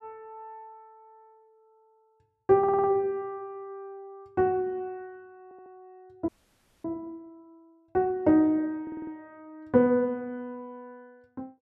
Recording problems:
stutter; at 2.5 s, at 5.5 s and at 9 s
audio freezing; at 6.5 s for 0.5 s

